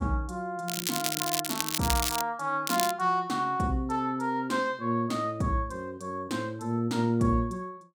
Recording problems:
crackle; from 0.5 to 2 s and at 2.5 s; loose cable, SNR 1 dB

